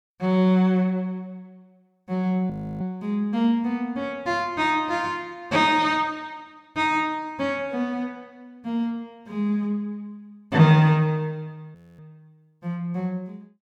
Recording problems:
audio freezing; at 2.5 s and at 12 s

